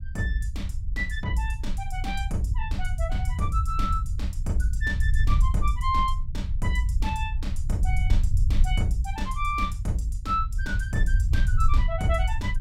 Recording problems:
rumble; below 72 Hz, SNR -2 dB

